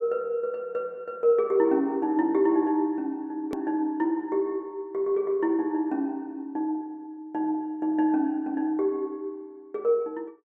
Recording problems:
click at an edit; at 3.5 s

